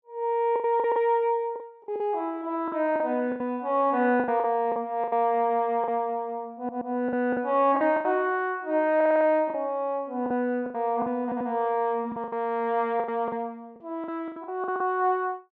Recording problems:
packet loss; 11% of the sound replaced, filled with the last packet
stutter; at 6.5 s, at 9 s and at 11 s

